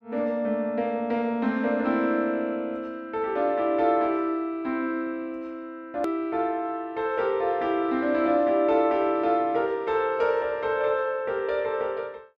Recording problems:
edit click; at 6 s

